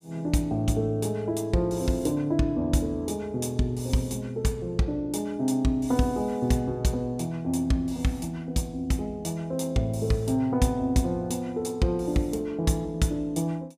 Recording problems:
none

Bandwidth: 15.5 kHz